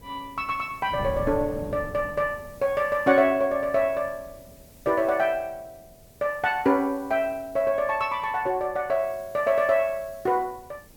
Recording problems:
background hiss; slope +4 dB per octave, SNR 28 dB
wind noise; below 320 Hz, SNR 18 dB

